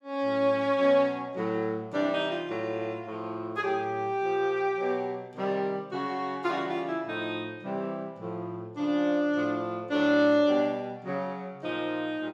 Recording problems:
none

